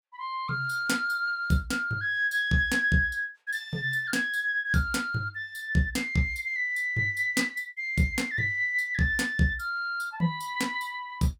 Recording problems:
none

